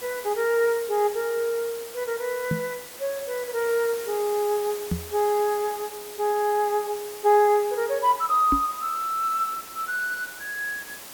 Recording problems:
background hiss; slope -2 dB per octave, SNR 13 dB
microphone thump; at 2.5 s, at 5 s and at 8.5 s; peak +2 dB vs average level

